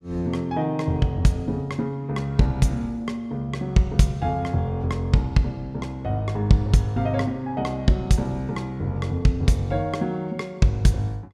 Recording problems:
none

